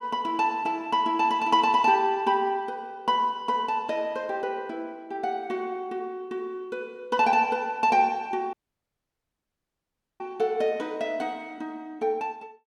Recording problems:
dropout; at 8.5 s for 1.5 s

